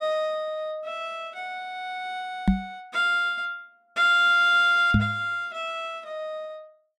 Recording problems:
microphone bump; at 2.5 s and at 5 s; peak +8 dB vs average level

